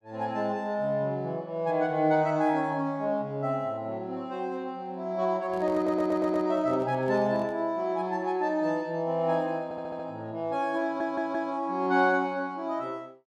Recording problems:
microphone handling noise; from 5.5 to 7.5 s; peak -12 dB vs average level
audio stuttering; at 6 s, at 9.5 s and at 11 s

